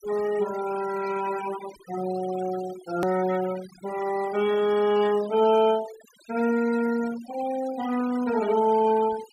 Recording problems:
noise reduction artefacts; signal-to-artefact ratio 16 dB
edit click; at 3 s

